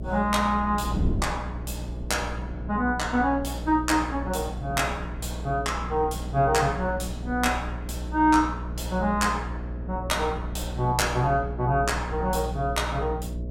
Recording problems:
hum; 60 Hz, harmonics up to 660 Hz, SNR 8 dB
wind noise; below 210 Hz, SNR 14 dB

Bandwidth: 17 kHz